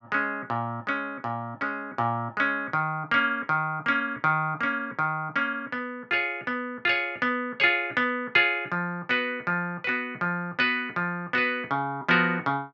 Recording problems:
none

